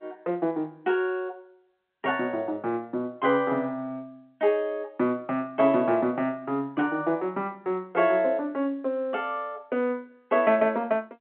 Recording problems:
telephone audio; 220 Hz to 3.5 kHz, G.711

